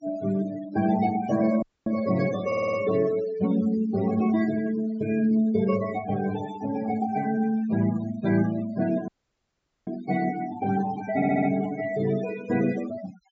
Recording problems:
treble missing; nothing above 8 kHz
noise reduction artefacts; signal-to-artefact ratio 15 dB
audio cutting out; at 1.5 s and at 9 s for 1 s
stutter; at 2.5 s and at 11 s

